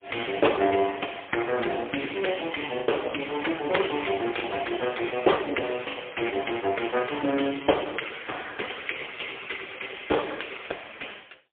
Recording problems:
telephone audio; 240 Hz to 3.4 kHz, AMR-NB, then MP3
packet loss; 1.8% of the sound replaced, filled with the last packet

